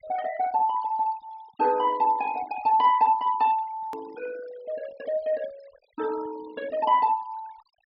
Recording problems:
treble cut off; nothing above 5.4 kHz
denoising artefacts; signal-to-artefact ratio 21 dB
edit click; at 4 s

